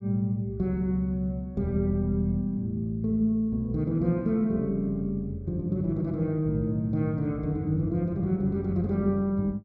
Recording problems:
none

